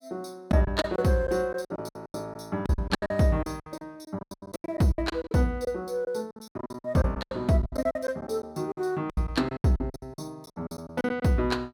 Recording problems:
lost packets; 19% of the sound replaced, filled with silence

